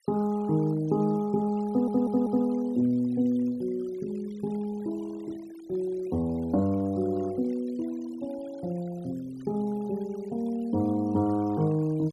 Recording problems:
noise reduction artefacts; signal-to-artefact ratio 24 dB
audio stuttering; at 1.5 s

